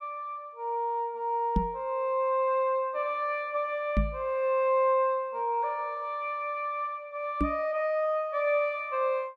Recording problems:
microphone bump; at 1.5 s, at 4 s and at 7.5 s; peak +5 dB vs average level

